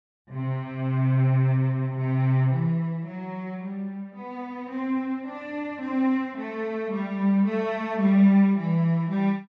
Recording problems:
none

